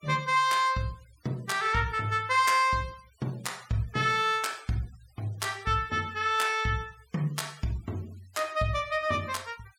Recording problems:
noise reduction artefacts; signal-to-artefact ratio 25 dB

